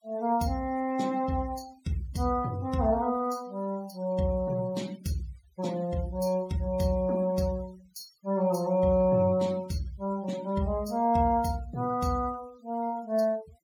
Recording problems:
noise reduction artefacts; signal-to-artefact ratio 22 dB

